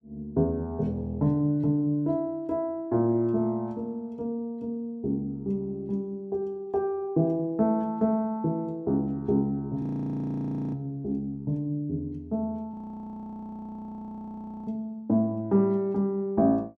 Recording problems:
frozen audio; at 10 s for 1 s and at 13 s for 2 s

